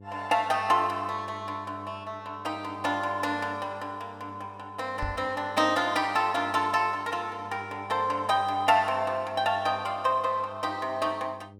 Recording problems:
hum; 50 Hz, harmonics up to 600 Hz, SNR 20 dB
microphone bump; at 5 s; peak -3 dB vs average level

